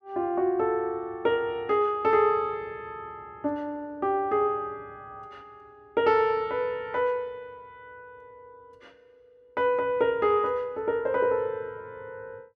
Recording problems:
none

